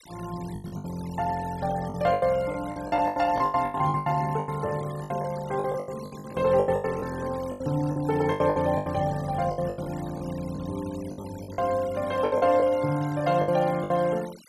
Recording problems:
denoising artefacts; signal-to-artefact ratio 20 dB
lost packets; 17% of the sound replaced, filled with the last packet

